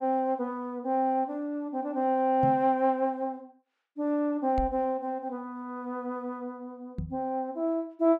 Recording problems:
microphone thump; at 2.5 s, at 4.5 s and at 7 s; peak +1 dB vs average level

